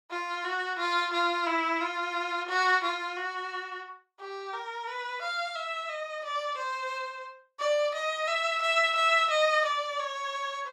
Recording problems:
none

